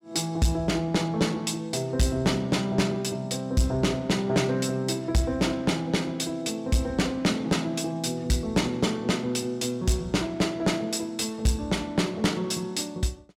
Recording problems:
distortion; soft clipping, signal-to-distortion ratio 11 dB

